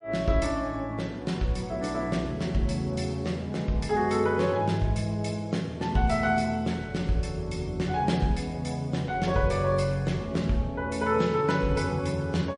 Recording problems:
lossy compression; MP3, log-spectral distance 2 dB, nothing above 10.4 kHz

